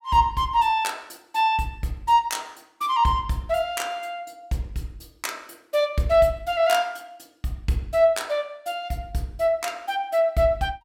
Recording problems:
none

